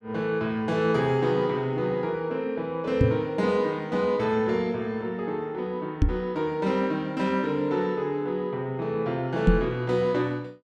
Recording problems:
microphone bump; at 3 s, at 6 s and at 9.5 s; peak +9 dB vs average level

